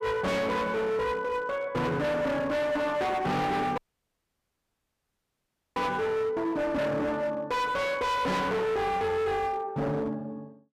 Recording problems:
distortion; hard clipping, signal-to-distortion ratio 7 dB
audio cutting out; at 4 s for 2 s

